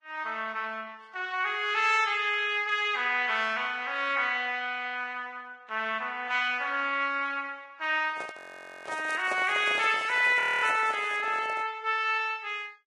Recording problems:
codec artefacts; Vorbis, log-spectral distance 3 dB
handling noise; from 8 to 12 s; peak -4 dB vs average level
audio freezing; at 8.5 s and at 10 s
crackle; from 9 to 11 s; loose cable, SNR 23 dB

